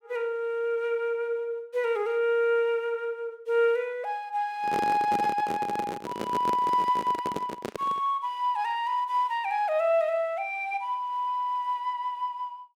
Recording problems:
handling noise; from 4.5 to 8 s; peak -1 dB vs average level

